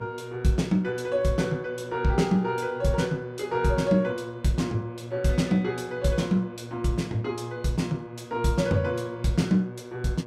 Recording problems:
electrical hum; 60 Hz, harmonics up to 2.2 kHz, SNR 18 dB

